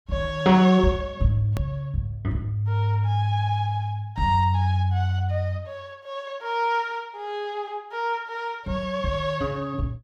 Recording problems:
edit click; at 1.5 s

